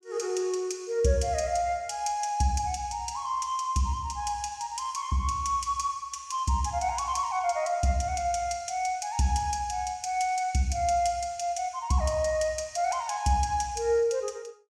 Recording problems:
none

